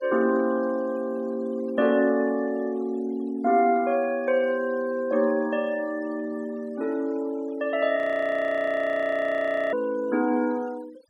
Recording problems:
denoising artefacts; signal-to-artefact ratio 24 dB
frozen audio; at 8 s for 2 s

